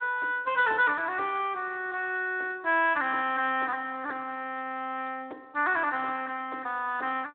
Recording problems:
phone line; 240 Hz to 3.6 kHz, Speex

